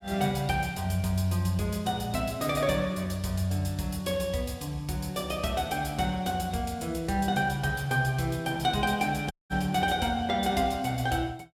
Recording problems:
audio cutting out; at 9.5 s

